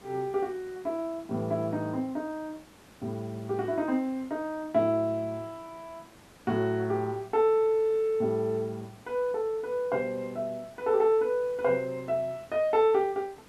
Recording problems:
hiss; slope -4 dB per octave, SNR 25 dB

